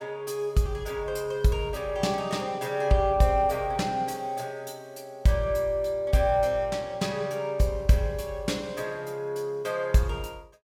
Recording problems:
none

